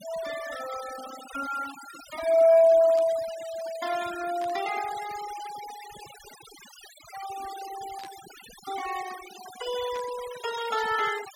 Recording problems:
denoising artefacts; signal-to-artefact ratio 16 dB
static burst; 4 times, first at 3 s; peak -14 dB vs average level

